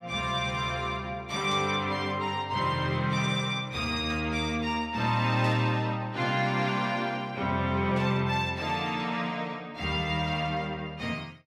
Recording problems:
static burst; 4 times, first at 1.5 s; peak -11 dB vs average level

